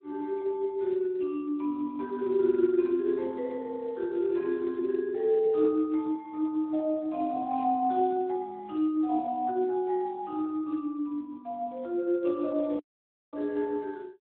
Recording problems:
phone line; 260 Hz to 2.7 kHz, Speex
audio cutting out; at 13 s for 0.5 s

